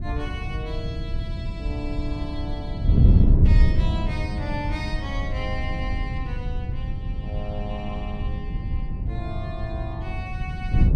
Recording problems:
wind on the microphone; below 120 Hz, SNR -9 dB

